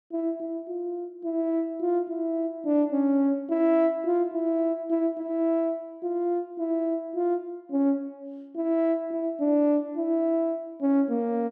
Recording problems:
none

